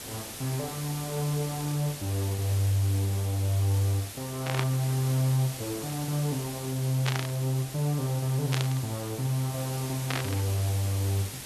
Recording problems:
hiss; slope -1 dB per octave, SNR 9 dB
burst of static; 4 times, first at 4.5 s; peak +3 dB vs average level

